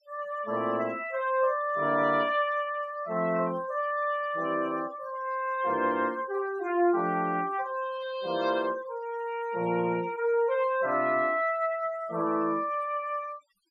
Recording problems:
denoising artefacts; signal-to-artefact ratio 21 dB

